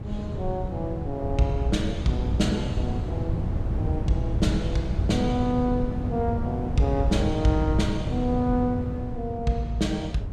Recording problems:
wind on the microphone; below 160 Hz, SNR 3 dB

